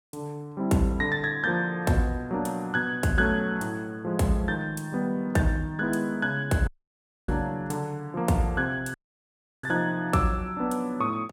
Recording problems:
audio cutting out; at 6.5 s for 0.5 s and at 9 s for 0.5 s

